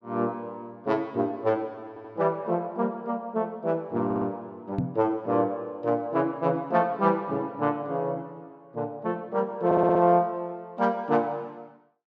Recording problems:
audio stuttering; at 2 s, at 4 s and at 9.5 s
microphone bump; at 5 s; peak +3 dB vs average level

